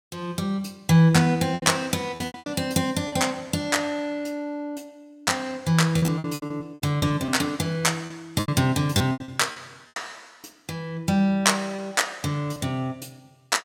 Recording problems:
lost packets; 10% of the sound replaced, filled with repeated pitch periods

